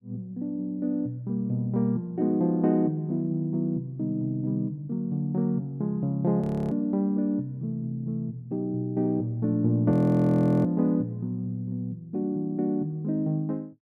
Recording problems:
frozen audio; at 6.5 s and at 10 s for 0.5 s

